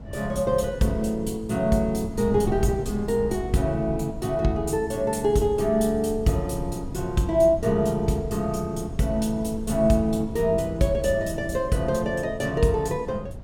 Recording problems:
wind noise; below 190 Hz, SNR 12 dB

